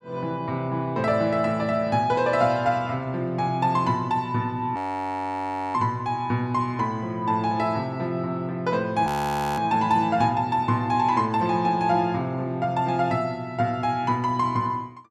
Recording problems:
frozen audio; at 5 s for 1 s and at 9 s for 0.5 s

